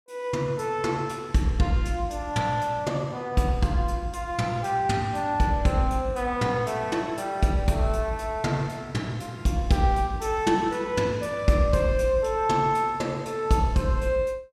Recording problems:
none

